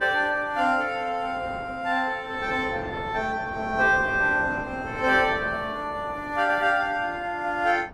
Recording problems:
wind noise; below 770 Hz, SNR 15 dB

